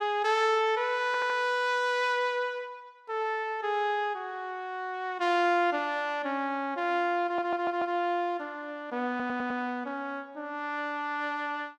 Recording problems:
stutter; at 1 s, at 7 s and at 9 s

